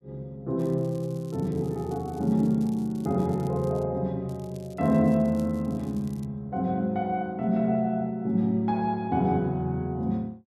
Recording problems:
crackling; from 0.5 to 4 s and from 4.5 to 6.5 s; loose cable, SNR 28 dB

